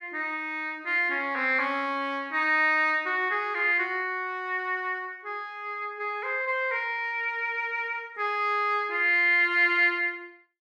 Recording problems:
none

